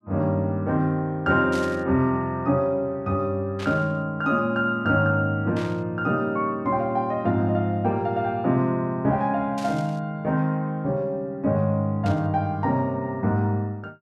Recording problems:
static burst; 5 times, first at 1.5 s; peak -9 dB vs average level

